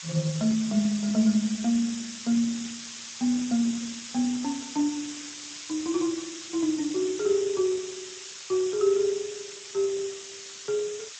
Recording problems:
lossy codec; Speex, log-spectral distance 20 dB
background hiss; slope +6 dB per octave, SNR 10 dB

